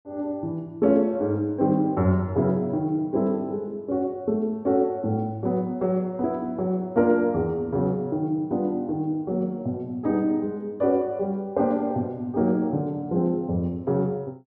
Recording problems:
none

